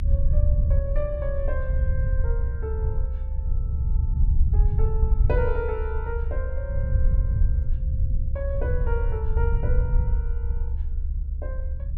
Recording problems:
rumble; below 72 Hz, SNR -9 dB

